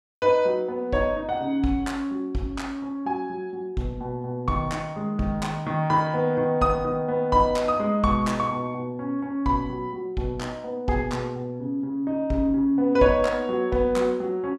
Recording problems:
none

